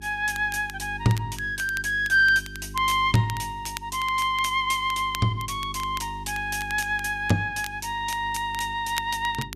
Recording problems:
hum; 50 Hz, harmonics up to 400 Hz, SNR 17 dB
crackling; vinyl, SNR 17 dB

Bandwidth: 14.5 kHz